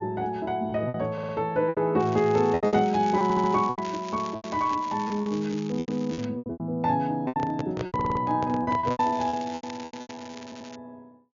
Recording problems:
treble cut off; nothing above 7.1 kHz
lost packets; 14% of the sound replaced, filled with repeated pitch periods
audio stuttering; 4 times, first at 1 s
crackle; from 2 to 6.5 s and from 9 to 11 s; loose cable, SNR 19 dB
microphone handling noise; from 7.5 to 9 s; peak -2 dB vs average level

